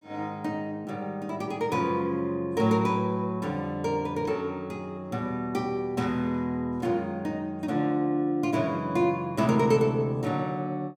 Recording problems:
none

